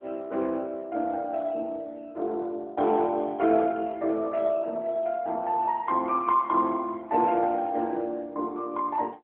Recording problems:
phone line; 260 Hz to 3.6 kHz, AMR-NB

